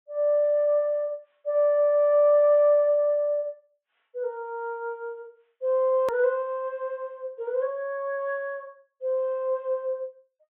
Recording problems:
treble cut off; nothing above 3.7 kHz
hard cut with a click; at 6 s

